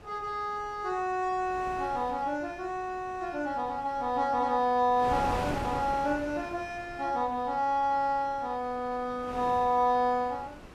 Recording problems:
wind noise; below 1.2 kHz, SNR 14 dB

